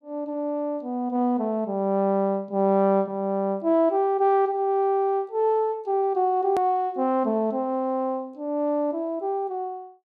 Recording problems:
click at an edit; at 6.5 s

